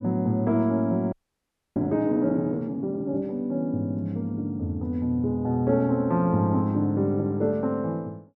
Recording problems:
audio freezing; at 1 s for 0.5 s

